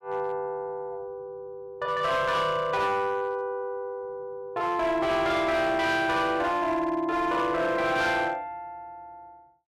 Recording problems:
distortion; hard clipping, signal-to-distortion ratio 11 dB

